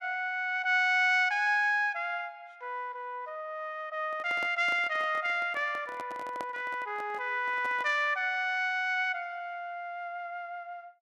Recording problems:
microphone handling noise; from 4 to 8 s; peak -7 dB vs average level

